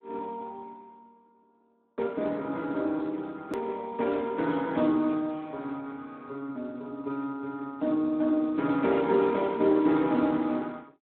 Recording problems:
phone line; 170 Hz to 3.9 kHz, Speex
edit click; at 3.5 s

